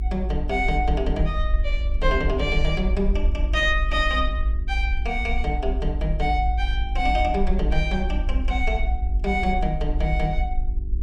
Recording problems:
mains hum; 50 Hz, harmonics up to 400 Hz, SNR 17 dB
rumble; below 54 Hz, SNR 1 dB

